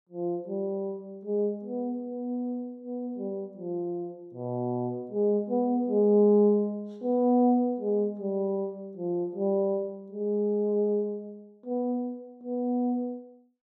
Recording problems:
none

